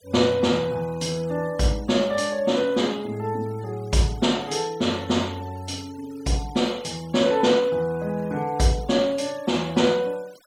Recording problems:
noise reduction artefacts; signal-to-artefact ratio 23 dB

